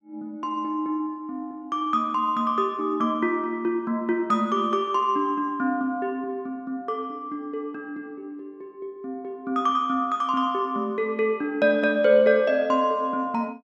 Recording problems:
none

